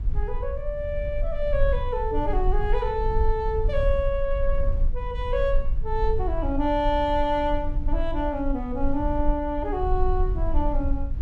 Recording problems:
low-frequency rumble; below 48 Hz, SNR 2 dB

